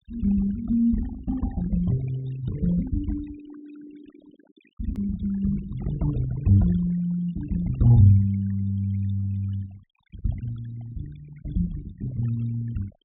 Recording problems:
treble cut off; nothing above 4 kHz
denoising artefacts; signal-to-artefact ratio 21 dB
edit click; at 5 s

